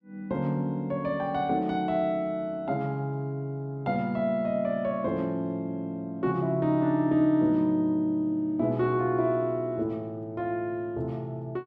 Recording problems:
none

